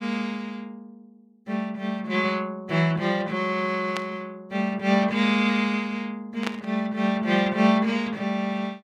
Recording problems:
burst of static; at 4 s and at 6.5 s; peak 0 dB vs average level

